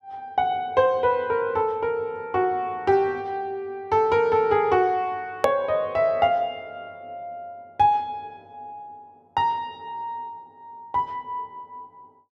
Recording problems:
click at an edit; at 5.5 s

